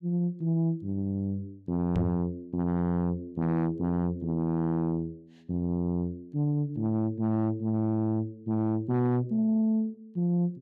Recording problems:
distorted audio; soft clipping, signal-to-distortion ratio 10 dB
microphone thump; at 2 s; peak +4 dB vs average level

